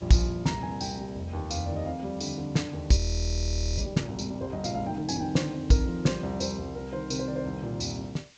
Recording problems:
treble cut off; nothing above 8 kHz
hiss; SNR 26 dB
audio freezing; at 3 s for 1 s

